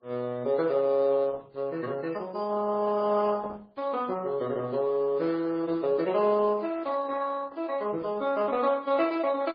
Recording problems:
lossy codec; Opus, then MP3, log-spectral distance 3 dB, nothing above 4.8 kHz

